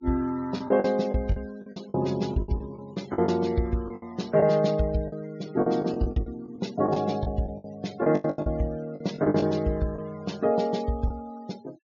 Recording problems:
treble cut off; nothing above 7.1 kHz
denoising artefacts; signal-to-artefact ratio 23 dB
lost packets; 12% of the sound replaced, filled with the last packet

